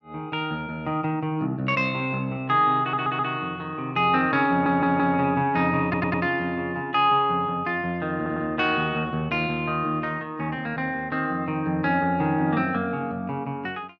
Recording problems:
audio stuttering; 4 times, first at 3 s

